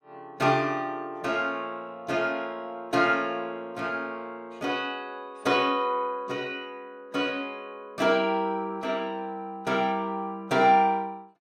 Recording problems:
none

